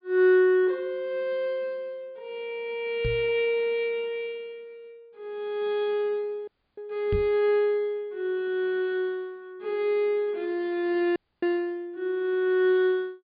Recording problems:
treble missing; nothing above 4.9 kHz
microphone thump; at 3 s and at 7 s; peak 0 dB vs average level
audio freezing; at 6.5 s and at 11 s

